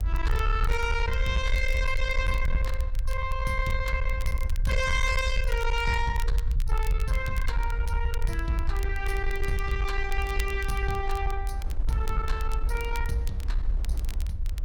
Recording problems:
distortion; soft clipping, signal-to-distortion ratio 12 dB
rumble; below 60 Hz, SNR 0 dB
wind noise; below 510 Hz, SNR 18 dB
crackling; vinyl, SNR 18 dB

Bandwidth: 17.5 kHz